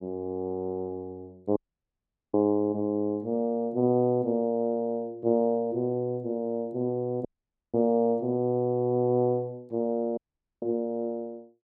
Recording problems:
dropout; at 1.5 s for 1 s, at 7.5 s and at 10 s

